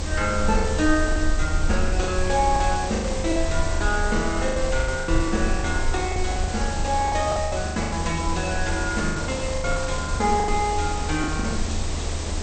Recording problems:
lossy codec; MP2, log-spectral distance 9 dB, nothing above 8.5 kHz
hiss; SNR 7 dB
rumble; below 80 Hz, SNR 4 dB
packet loss; 15% of the sound replaced, filled with the last packet

